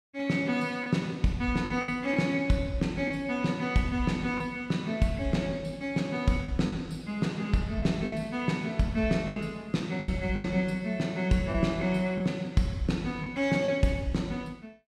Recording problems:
lost packets; 5% of the sound replaced, filled with the last packet

